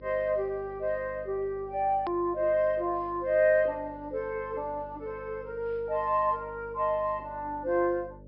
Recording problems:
treble cut off; nothing above 5.2 kHz
hum; 50 Hz, harmonics up to 600 Hz, SNR 21 dB
click at an edit; at 2 s

